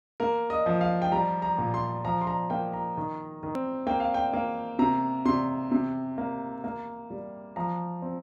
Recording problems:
edit click; at 3.5 s

